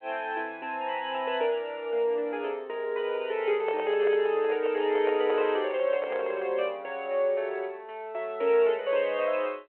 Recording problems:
phone line; 320 Hz to 3.1 kHz, G.726
handling noise; from 3.5 to 6.5 s; peak -3 dB vs average level

